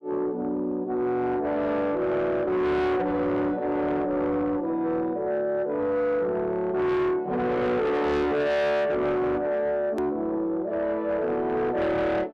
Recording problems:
distorted audio; soft clipping, signal-to-distortion ratio 8 dB
edit click; at 10 s

